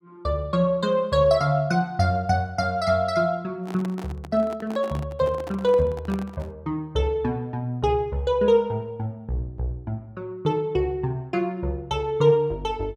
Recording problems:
handling noise; from 3.5 to 6.5 s; peak -9 dB vs average level

